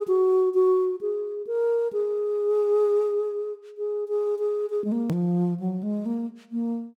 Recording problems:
click at an edit; at 5 s

